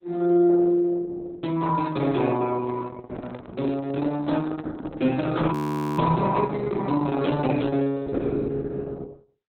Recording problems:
lossy compression; Opus, log-spectral distance 3 dB, nothing above 18.9 kHz
microphone handling noise; from 2.5 to 7 s; peak -5 dB vs average level
audio freezing; at 5.5 s

